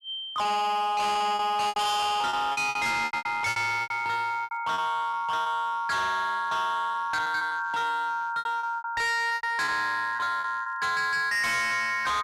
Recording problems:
distortion; hard clipping, signal-to-distortion ratio 6 dB
packet loss; 11% of the sound replaced, filled with repeated pitch periods

